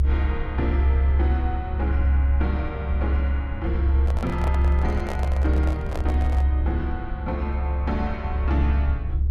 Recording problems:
low-frequency rumble; below 70 Hz, strongest tone 68 Hz, SNR -7 dB
handling noise; from 4 to 6.5 s; peak +2 dB vs average level

